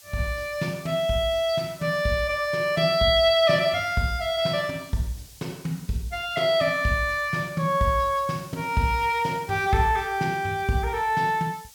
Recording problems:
hiss; SNR 23 dB

